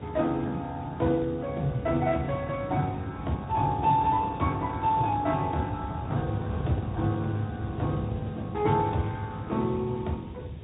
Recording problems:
low-pass filter; nothing above 3.8 kHz
lossy codec; Speex, log-spectral distance 4 dB
hiss; SNR 30 dB
low-frequency rumble; below 210 Hz, SNR 12 dB
wind noise; below 240 Hz, SNR 11 dB

